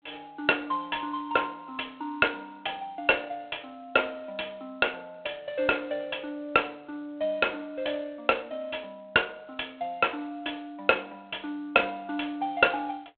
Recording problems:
phone line; 260 Hz to 3.5 kHz, G.726

